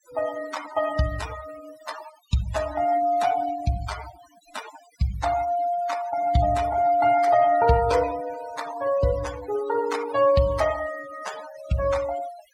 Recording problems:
noise reduction artefacts; signal-to-artefact ratio 14 dB

